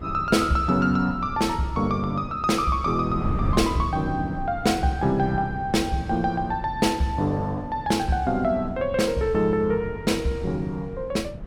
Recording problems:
wind noise; below 210 Hz, SNR 11 dB

